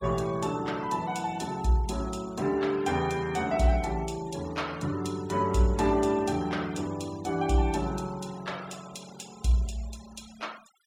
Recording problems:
noise reduction artefacts; signal-to-artefact ratio 20 dB

